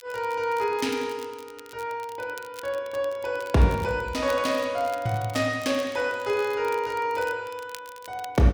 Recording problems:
crackle; vinyl, SNR 21 dB

